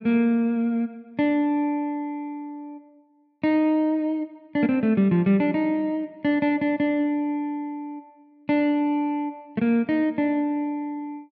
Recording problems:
none

